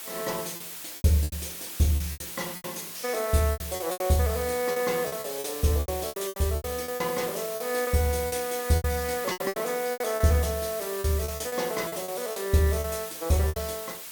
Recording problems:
background hiss; slope +1 dB per octave, SNR 8 dB
packet loss; 14% of the sound replaced, filled with repeated pitch periods

